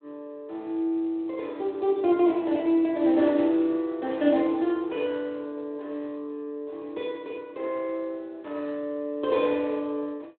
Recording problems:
phone line; 260 Hz to 3.9 kHz, Speex

